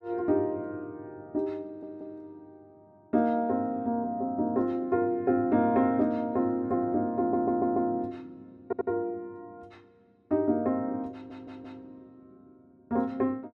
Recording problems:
stutter; 4 times, first at 1.5 s

